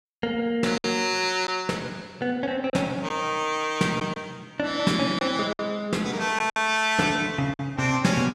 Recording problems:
lost packets; 4% of the sound replaced, filled with silence

